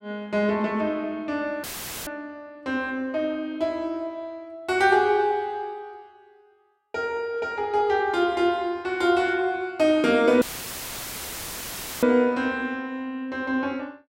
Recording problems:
dropout; at 1.5 s and at 10 s for 1.5 s; filled with static

